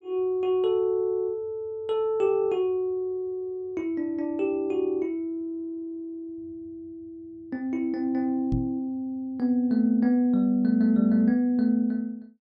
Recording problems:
knock on the microphone; at 8.5 s; peak +1 dB vs average level

